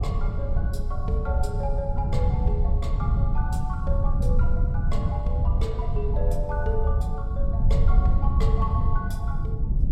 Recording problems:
low-frequency rumble; below 96 Hz, SNR -3 dB
wind noise; below 80 Hz, SNR -3 dB

